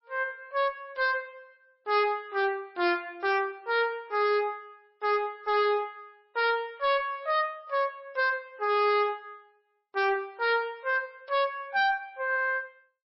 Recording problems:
lossy compression; MP3, log-spectral distance 2 dB, nothing above 5 kHz
distorted audio; hard clipping, signal-to-distortion ratio 10 dB

